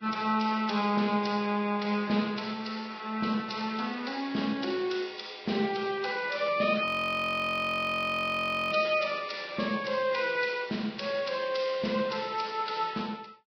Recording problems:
lossy codec; Vorbis, log-spectral distance 7 dB
frozen audio; at 7 s for 2 s

